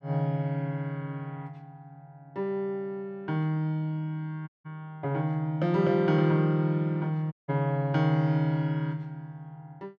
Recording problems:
dropout; at 4.5 s and at 7.5 s

